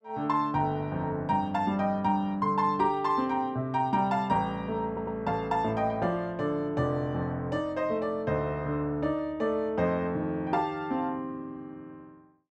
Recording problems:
audio stuttering; at 5 s

